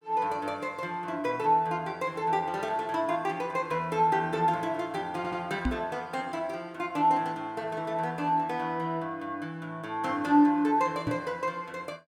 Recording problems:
stutter; at 5 s
microphone bump; at 5.5 s and at 11 s; peak +3 dB vs average level

